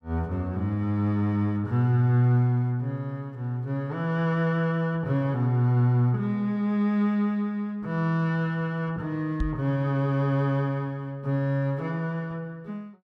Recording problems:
knock on the microphone; at 9.5 s; peak +1 dB vs average level

